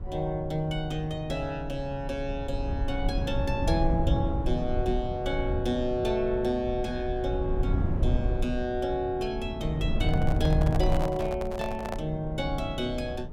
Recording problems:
rumble; below 110 Hz, SNR 2 dB
microphone handling noise; from 10 to 12 s; peak -1 dB vs average level

